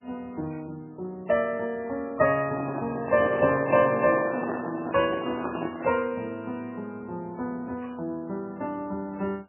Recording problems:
lossy compression; AAC, then MP3, log-spectral distance 3 dB, nothing above 2.5 kHz
microphone handling noise; from 2.5 to 6 s; peak 0 dB vs average level

